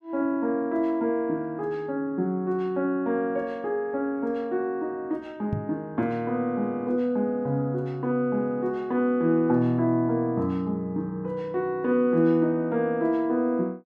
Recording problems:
knock on the microphone; at 5.5 s; peak +1 dB vs average level

